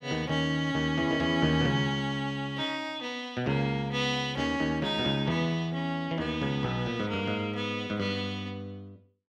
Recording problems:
none

